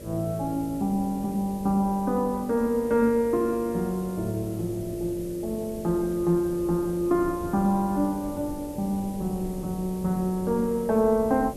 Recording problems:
mains hum; 50 Hz, harmonics up to 600 Hz, SNR 17 dB
background hiss; slope +2 dB per octave, SNR 22 dB
wind on the microphone; below 270 Hz, SNR 18 dB

